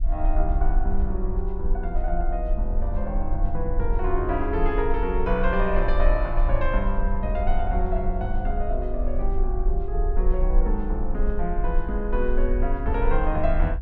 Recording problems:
rumble; below 42 Hz, strongest tone 22 Hz, SNR 0 dB

